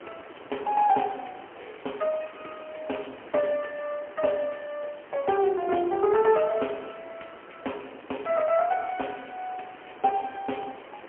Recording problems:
telephone audio; 280 Hz to 3.1 kHz, AMR-NB, then MP3
hiss; SNR 21 dB
wind on the microphone; below 710 Hz, SNR 20 dB

